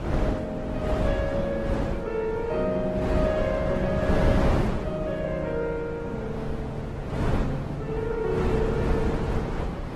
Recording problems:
lossy compression; Opus, log-spectral distance 2 dB
wind noise; below 410 Hz, SNR 0 dB

